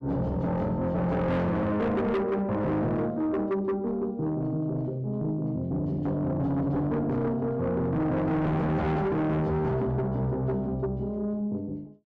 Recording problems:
distortion; soft clipping, signal-to-distortion ratio 7 dB

